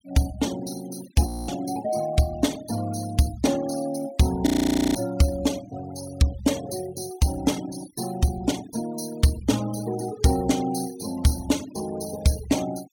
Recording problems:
noise reduction artefacts; signal-to-artefact ratio 17 dB
audio freezing; at 1.5 s and at 4.5 s

